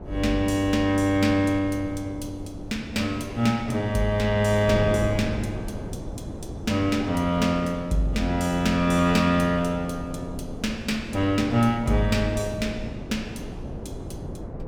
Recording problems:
wind on the microphone; below 370 Hz, SNR 12 dB

